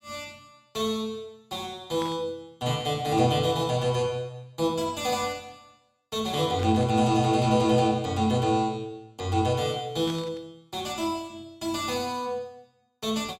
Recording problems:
burst of static; at 2 s, at 6.5 s and at 10 s; peak -10 dB vs average level

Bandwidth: 16.5 kHz